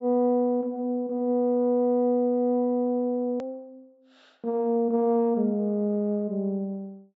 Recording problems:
low-pass filter; nothing above 8 kHz
click at an edit; at 3.5 s

